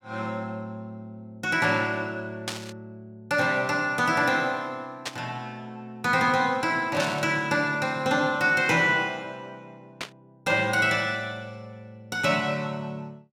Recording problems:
static burst; 4 times, first at 2.5 s; peak -1 dB vs average level

